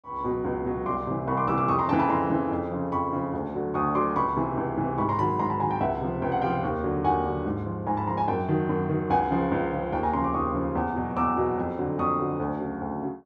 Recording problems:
none

